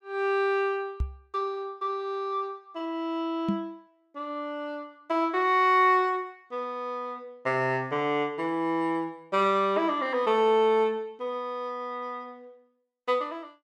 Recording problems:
microphone thump; at 1 s and at 3.5 s; peak +3 dB vs average level

